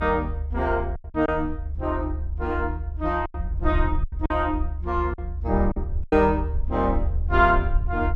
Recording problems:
rumble; below 74 Hz, SNR 4 dB
lost packets; 7% of the sound replaced, filled with silence

